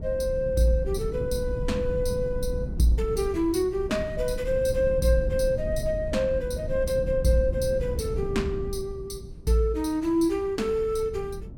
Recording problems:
wind noise; below 130 Hz, SNR 8 dB

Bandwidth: 17 kHz